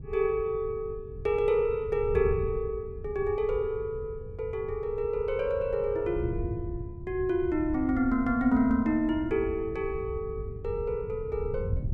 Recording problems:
wind noise; below 120 Hz, SNR 10 dB

